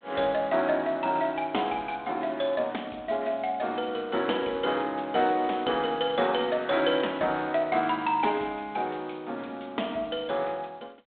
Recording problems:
telephone audio; 260 Hz to 3.7 kHz, G.726

